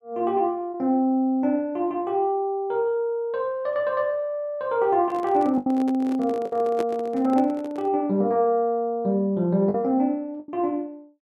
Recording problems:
packet loss; 3% of the sound replaced, filled with the last packet
handling noise; from 5 to 8 s; peak -3 dB vs average level

